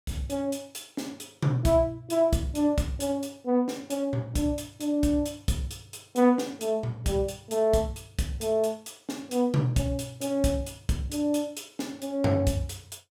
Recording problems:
none

